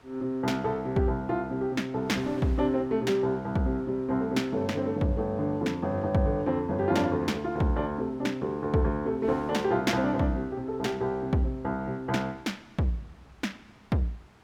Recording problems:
wind noise; below 1.6 kHz, SNR 25 dB

